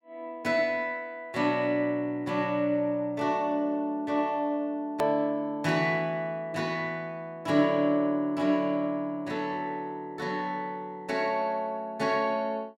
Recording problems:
click at an edit; at 5 s

